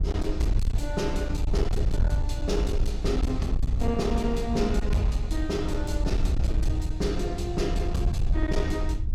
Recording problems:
distortion; hard clipping, signal-to-distortion ratio 12 dB
wind on the microphone; below 76 Hz, SNR -1 dB

